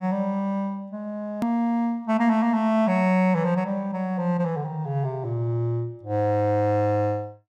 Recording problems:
click at an edit; at 1.5 s

